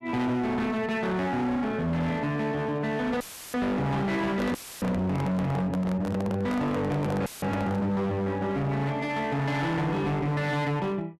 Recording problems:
distortion; hard clipping, signal-to-distortion ratio 8 dB
dropout; at 3 s, at 4.5 s and at 7.5 s; filled with static
microphone handling noise; from 4.5 to 8 s; peak -1 dB vs average level

